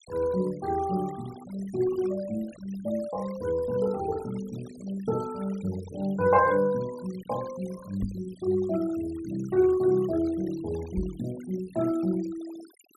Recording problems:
noise reduction artefacts; signal-to-artefact ratio 20 dB
knock on the microphone; at 8 s and at 11 s; peak 0 dB vs average level

